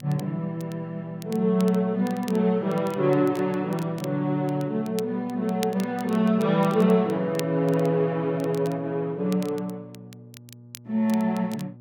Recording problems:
hum; 60 Hz, harmonics up to 600 Hz, SNR 22 dB
crackle; vinyl, SNR 21 dB

